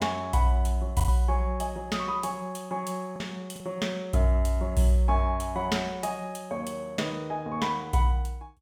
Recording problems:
packet loss; 1.9% of the sound replaced, filled with the last packet

